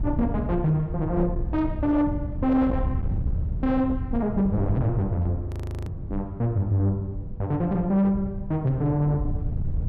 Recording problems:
distortion; soft clipping, signal-to-distortion ratio 11 dB
wind noise; below 120 Hz, SNR 7 dB
audio freezing; at 5.5 s

